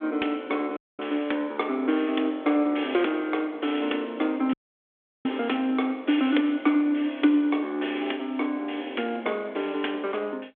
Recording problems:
telephone audio; 240 Hz to 3.5 kHz, G.726
audio cutting out; at 1 s and at 4.5 s for 0.5 s

